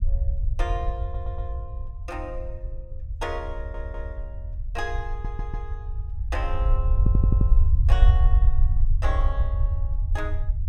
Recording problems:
rumble; below 66 Hz, SNR -10 dB
stutter; 4 times, first at 1 s

